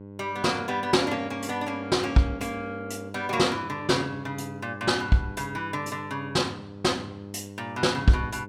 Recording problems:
electrical hum; 50 Hz, harmonics up to 1.1 kHz, SNR 14 dB

